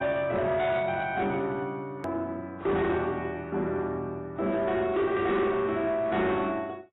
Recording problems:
lossy compression; AAC, log-spectral distance 2 dB, nothing above 13.1 kHz
distortion; soft clipping, signal-to-distortion ratio 11 dB
hard cut with a click; at 2 s

